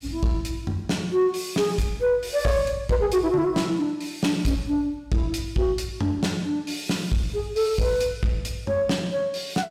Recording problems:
distorted audio; soft clipping, signal-to-distortion ratio 12 dB

